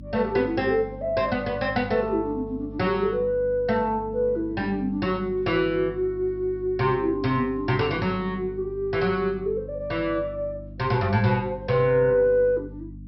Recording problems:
low-pass filter; nothing above 5.6 kHz
electrical hum; 50 Hz, harmonics up to 300 Hz, SNR 16 dB

